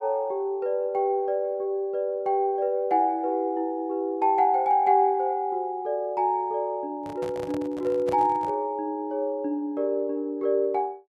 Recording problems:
microphone handling noise; from 7 to 8.5 s; peak -7 dB vs average level

